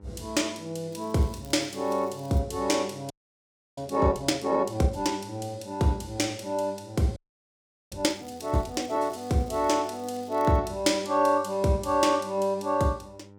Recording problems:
hum; 50 Hz, harmonics up to 1.4 kHz, SNR 23 dB
crackle; from 1 to 2.5 s and from 8 to 11 s; loose cable, SNR 27 dB
audio freezing; at 3 s for 0.5 s and at 7 s for 1 s

